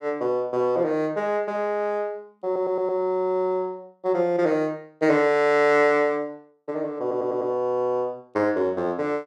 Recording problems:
audio stuttering; at 2.5 s and at 7 s

